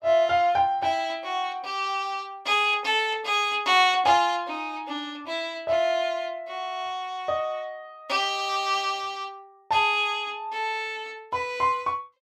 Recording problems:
none

